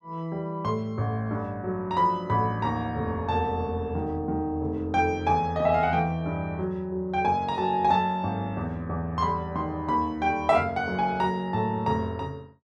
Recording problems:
none

